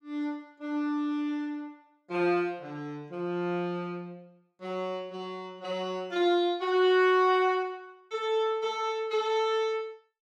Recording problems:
none

